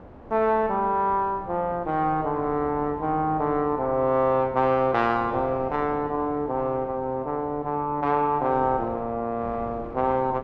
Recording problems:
wind on the microphone; below 660 Hz, SNR 17 dB

